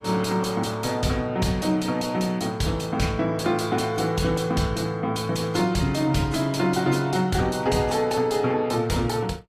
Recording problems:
lossy codec; AAC, log-spectral distance 3 dB, nothing above 15.1 kHz
distortion; soft clipping, signal-to-distortion ratio 11 dB

